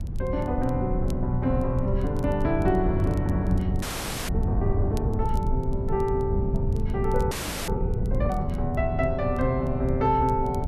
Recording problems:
low-frequency rumble; below 84 Hz, SNR 6 dB
wind on the microphone; below 140 Hz, SNR 6 dB
crackling; vinyl, SNR 28 dB
audio freezing; at 4 s and at 7.5 s

